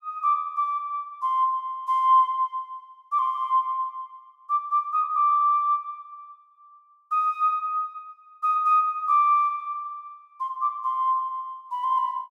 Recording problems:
none

